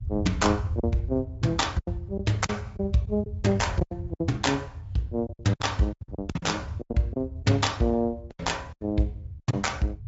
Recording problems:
treble cut off; nothing above 7.6 kHz
codec artefacts; Opus, log-spectral distance 2 dB
low-frequency rumble; below 110 Hz, SNR 9 dB
lost packets; 11% of the sound replaced, filled with silence

